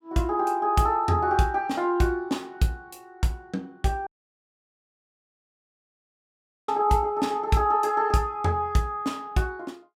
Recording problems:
audio cutting out; at 4 s for 2.5 s

